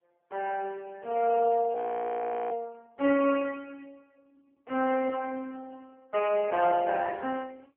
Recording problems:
telephone audio; 220 Hz to 2.9 kHz, AMR-NB
frozen audio; at 2 s for 1 s

